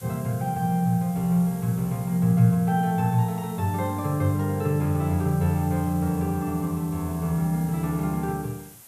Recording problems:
hiss; slope -1 dB per octave, SNR 20 dB

